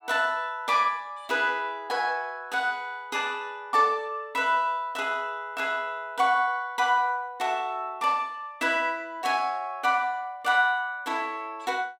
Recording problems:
none

